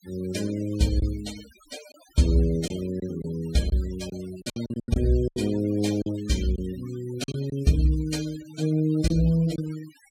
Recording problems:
noise reduction artefacts; signal-to-artefact ratio 17 dB
packet loss; 7% of the sound replaced, filled with silence

